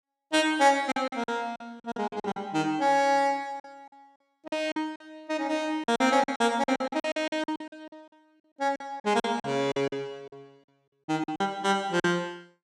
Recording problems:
packet loss; 14% of the sound replaced, filled with silence

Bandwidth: 14.5 kHz